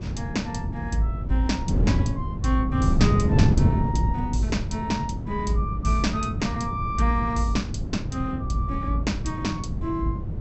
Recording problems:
treble cut off; nothing above 7.8 kHz
wind on the microphone; below 180 Hz, SNR 0 dB

